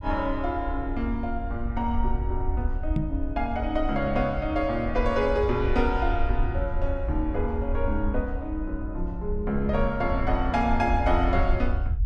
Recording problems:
rumble; below 66 Hz, SNR 4 dB
microphone bump; at 3 s; peak +5 dB vs average level

